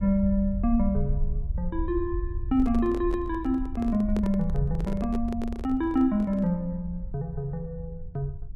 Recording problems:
low-frequency rumble; below 68 Hz, SNR 8 dB
handling noise; from 2.5 to 6.5 s; peak -4 dB vs average level

